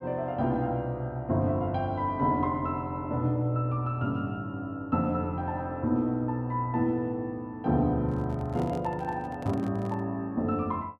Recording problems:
microphone handling noise; from 8 to 10 s; peak -9 dB vs average level

